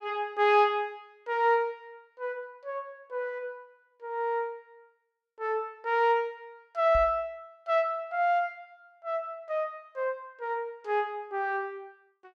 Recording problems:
knock on the microphone; at 7 s; peak -4 dB vs average level

